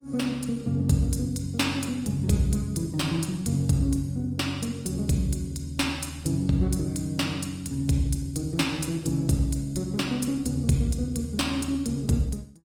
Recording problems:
lossy codec; Opus, log-spectral distance 3 dB, nothing above 19 kHz

